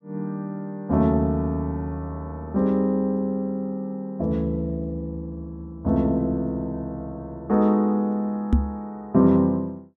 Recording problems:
microphone thump; at 8.5 s; peak +9 dB vs average level

